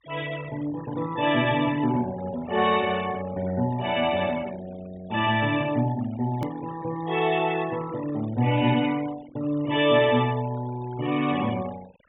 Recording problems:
treble missing; nothing above 4 kHz
noise reduction artefacts; signal-to-artefact ratio 19 dB
click at an edit; at 6.5 s

